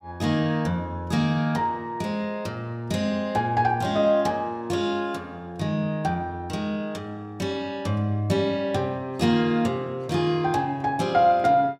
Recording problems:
none

